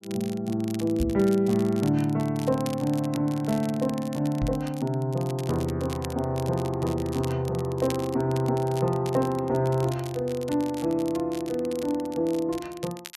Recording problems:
crackling; vinyl, SNR 18 dB
microphone bump; at 1 s and at 4.5 s; peak +2 dB vs average level

